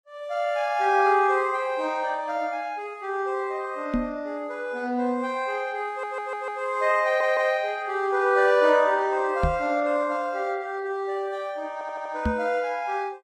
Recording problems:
codec artefacts; Vorbis, log-spectral distance 2 dB, nothing above 13.5 kHz
knock on the microphone; at 4 s, at 9.5 s and at 12 s; peak +3 dB vs average level
audio stuttering; at 6 s, at 7 s and at 12 s

